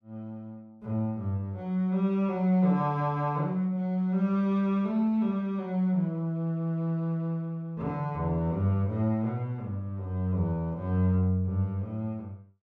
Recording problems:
none

